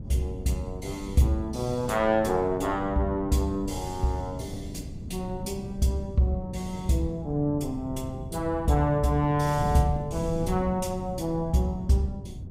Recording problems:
wind on the microphone; below 180 Hz, SNR 10 dB

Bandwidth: 15.5 kHz